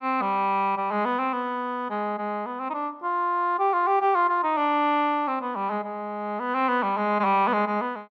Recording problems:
none

